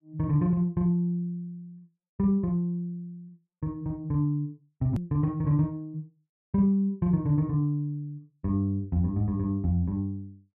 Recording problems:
edit click; at 5 s

